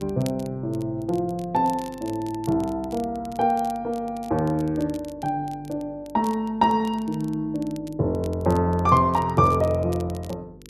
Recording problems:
electrical hum; 50 Hz, harmonics up to 500 Hz, SNR 23 dB
crackling; vinyl, SNR 24 dB

